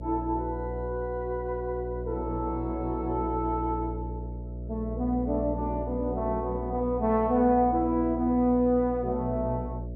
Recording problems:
hum; 60 Hz, harmonics up to 660 Hz, SNR 9 dB

